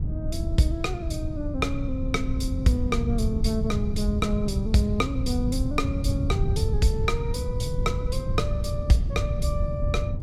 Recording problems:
wind noise; below 120 Hz, SNR 0 dB

